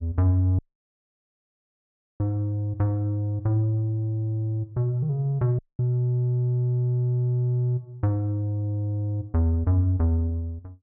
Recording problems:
audio cutting out; at 0.5 s for 1.5 s and at 5.5 s

